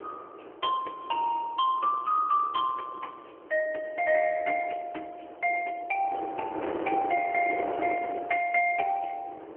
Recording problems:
phone line; 300 Hz to 3.1 kHz, AMR-NB
wind noise; below 740 Hz, SNR 12 dB

